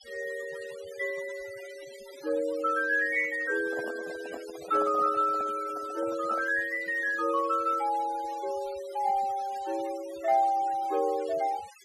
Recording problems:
denoising artefacts; signal-to-artefact ratio 19 dB
microphone handling noise; from 3.5 to 6.5 s; peak -6 dB vs average level

